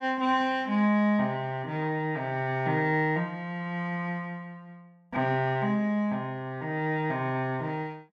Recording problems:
none

